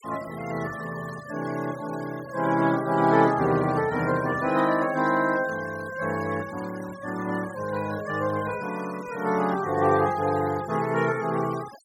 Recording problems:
noise reduction artefacts; signal-to-artefact ratio 18 dB

